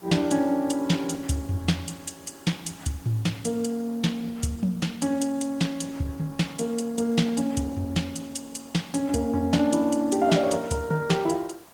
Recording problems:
lossy codec; Opus, log-spectral distance 4 dB, nothing above 18.9 kHz
background hiss; SNR 25 dB

